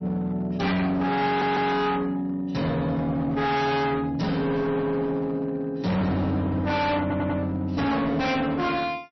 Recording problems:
codec artefacts; MP3, log-spectral distance 2 dB, nothing above 5.8 kHz
distorted audio; hard clipping, signal-to-distortion ratio 6 dB
stutter; at 1.5 s and at 7 s

